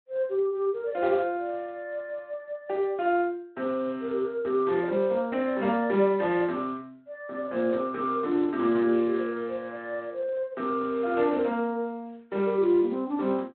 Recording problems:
phone line; 190 Hz to 3.9 kHz, Speex

